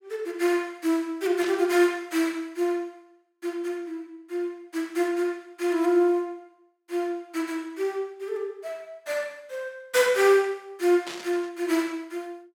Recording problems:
static burst; at 1.5 s and at 11 s; peak -7 dB vs average level

